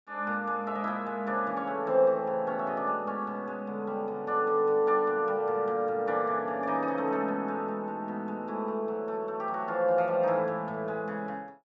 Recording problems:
treble missing; nothing above 8 kHz

